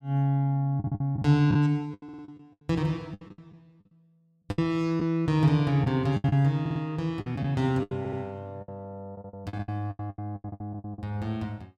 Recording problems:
lost packets; 14% of the sound replaced, filled with the last packet
stutter; 4 times, first at 1 s

